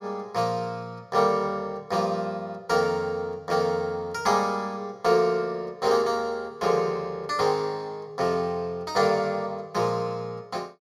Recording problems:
none

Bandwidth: 16 kHz